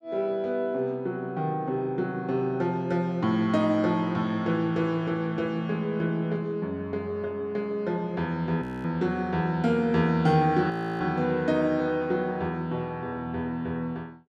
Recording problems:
frozen audio; at 8.5 s and at 11 s

